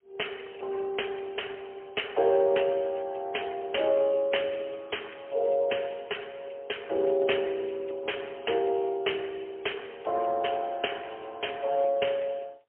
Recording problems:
phone line; 340 Hz to 3.1 kHz, AMR-NB, then MP3

